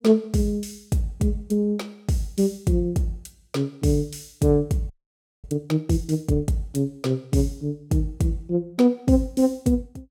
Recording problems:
audio freezing; at 5 s for 0.5 s

